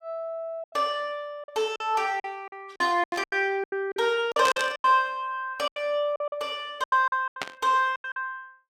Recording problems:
lost packets; 14% of the sound replaced, filled with silence
burst of static; at 3 s, at 4.5 s and at 7.5 s; peak 0 dB vs average level

